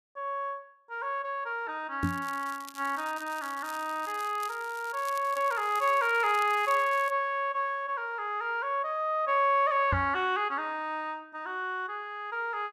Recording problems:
crackling; from 2 to 7 s; loose cable, SNR 19 dB
knock on the microphone; at 2 s and at 10 s; peak +3 dB vs average level

